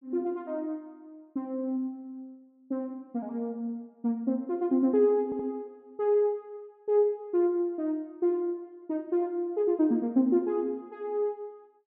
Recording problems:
audio stuttering; at 5 s

